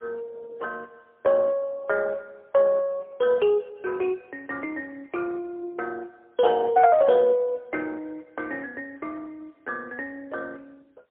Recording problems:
phone line; 340 Hz to 2.7 kHz, AMR-NB, then MP3

